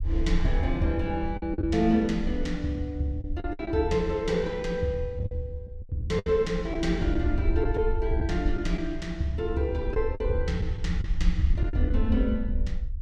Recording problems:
low-frequency rumble; below 62 Hz, SNR 5 dB
packet loss; 5% of the sound replaced, filled with the last packet

